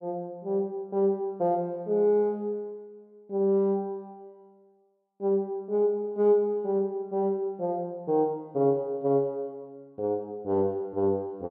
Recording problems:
none

